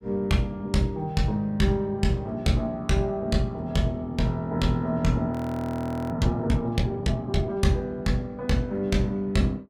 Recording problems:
audio freezing; at 5.5 s for 1 s

